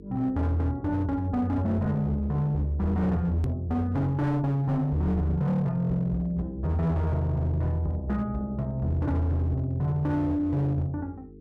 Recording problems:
distortion; hard clipping, signal-to-distortion ratio 11 dB
hum; 50 Hz, harmonics up to 450 Hz, SNR 20 dB
click at an edit; at 3.5 s

